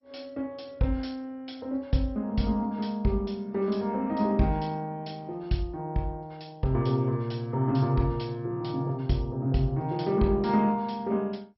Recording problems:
lossy compression; MP2, log-spectral distance 3 dB, nothing above 5.5 kHz

